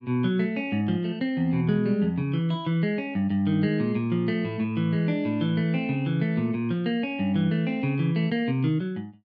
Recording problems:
none

